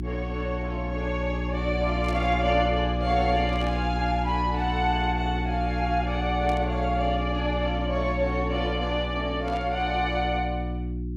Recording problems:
hum; 60 Hz, harmonics up to 360 Hz, SNR 3 dB
burst of static; 4 times, first at 2 s; peak -11 dB vs average level

